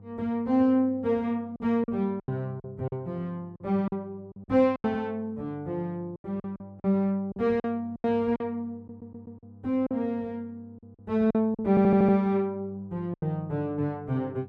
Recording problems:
mains hum; 50 Hz, harmonics up to 700 Hz, SNR 22 dB
packet loss; 9% of the sound replaced, filled with silence
stutter; at 9 s and at 12 s

